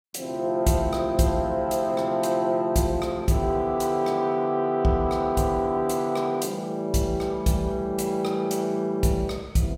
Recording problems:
none

